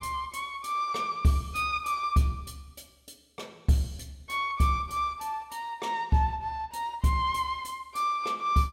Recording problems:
none

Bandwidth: 16 kHz